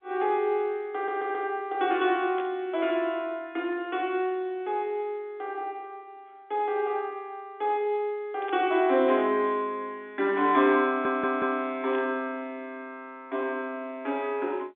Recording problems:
telephone audio; 220 Hz to 3.6 kHz, G.711
stutter; at 1 s and at 11 s
burst of static; at 2.5 s, at 8.5 s and at 12 s; peak -10 dB vs average level

